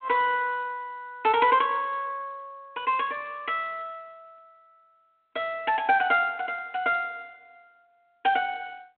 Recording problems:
phone line; 280 Hz to 3.3 kHz, G.726

